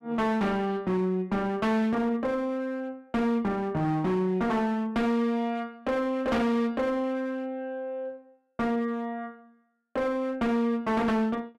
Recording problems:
distortion; hard clipping, uneven, signal-to-distortion ratio 6 dB

